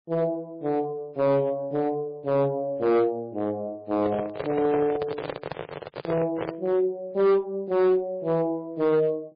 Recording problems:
lossy compression; MP3, log-spectral distance 2 dB, nothing above 10.7 kHz
distorted audio; hard clipping, uneven, signal-to-distortion ratio 11 dB
handling noise; from 4 to 6.5 s; peak -2 dB vs average level

